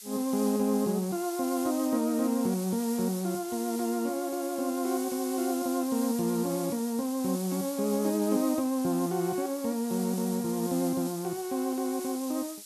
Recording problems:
background hiss; slope +5 dB per octave, SNR 11 dB

